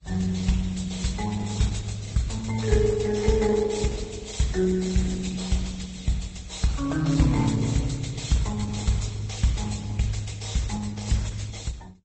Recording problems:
codec artefacts; Opus, then Vorbis, log-spectral distance 6 dB, nothing above 8.2 kHz

